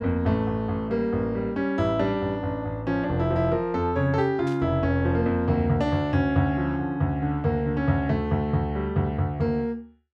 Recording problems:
static burst; at 4.5 s; peak -16 dB vs average level

